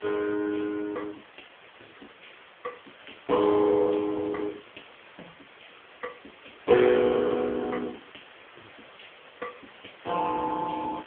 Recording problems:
phone line; 320 Hz to 3.3 kHz, AMR-NB
background hiss; SNR 23 dB

